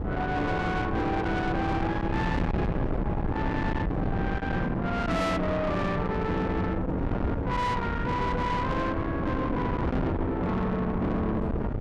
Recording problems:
distorted audio; soft clipping, signal-to-distortion ratio 7 dB
wind on the microphone; below 460 Hz, SNR 2 dB

